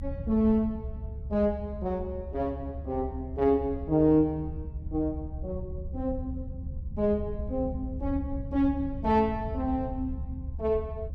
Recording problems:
rumble; below 86 Hz, SNR 9 dB

